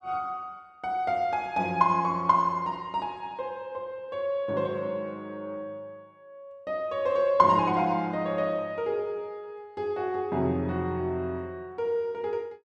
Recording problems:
none

